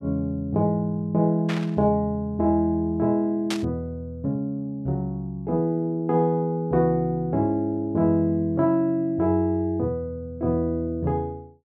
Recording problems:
static burst; at 1.5 s and at 3.5 s; peak -2 dB vs average level

